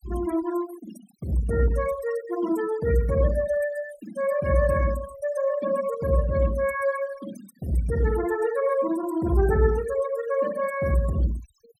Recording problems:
denoising artefacts; signal-to-artefact ratio 17 dB

